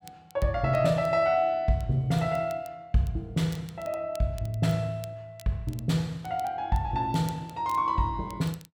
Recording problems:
crackling; vinyl, SNR 25 dB

